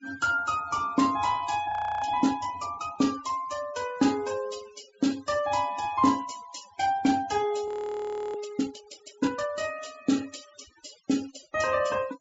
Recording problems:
treble cut off; nothing above 8 kHz
noise reduction artefacts; signal-to-artefact ratio 17 dB
audio freezing; at 1.5 s and at 7.5 s for 0.5 s

